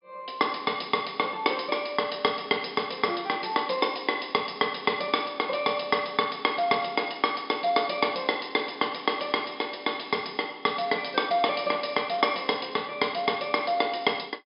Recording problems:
low-pass filter; nothing above 5.1 kHz

